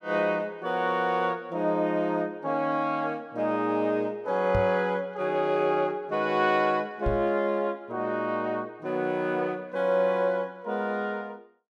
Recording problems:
knock on the microphone; at 4.5 s and at 7 s; peak 0 dB vs average level

